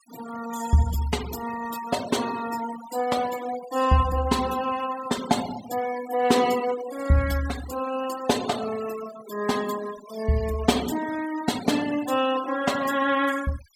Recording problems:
noise reduction artefacts; signal-to-artefact ratio 14 dB

